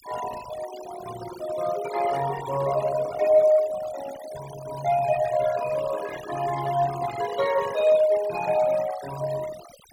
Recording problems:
noise reduction artefacts; signal-to-artefact ratio 14 dB

